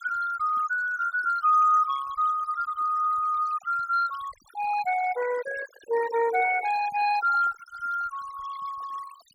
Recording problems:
denoising artefacts; signal-to-artefact ratio 16 dB

